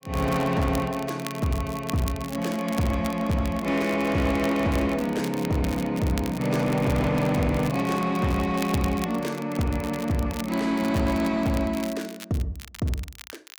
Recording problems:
distorted audio; hard clipping, uneven, signal-to-distortion ratio 11 dB
crackling; vinyl, SNR 15 dB

